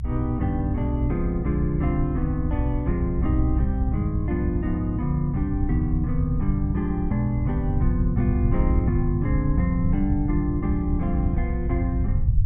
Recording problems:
low-frequency rumble; below 100 Hz, SNR 1 dB

